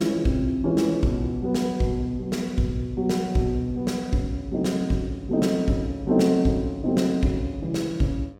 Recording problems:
hum; 50 Hz, harmonics up to 1.8 kHz, SNR 29 dB

